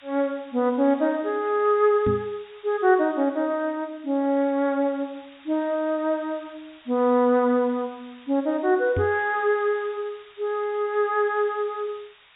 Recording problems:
treble missing; nothing above 4 kHz
hiss; SNR 27 dB
microphone thump; at 2 s and at 9 s; peak 0 dB vs average level

